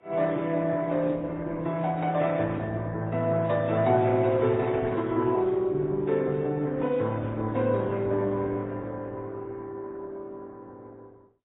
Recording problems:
lossy codec; Opus, then AAC, log-spectral distance 3 dB, nothing above 3.8 kHz

